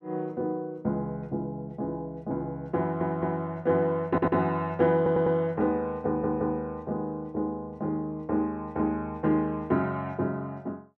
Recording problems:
stutter; 4 times, first at 3 s

